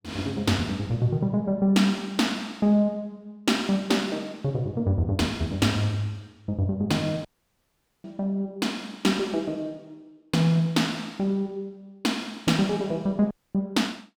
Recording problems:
dropout; at 7.5 s for 1 s and at 13 s

